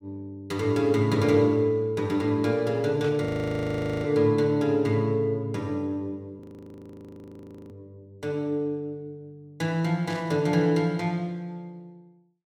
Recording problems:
burst of static; at 3 s and at 10 s; peak -12 dB vs average level
frozen audio; at 3.5 s for 1 s and at 6.5 s for 1.5 s

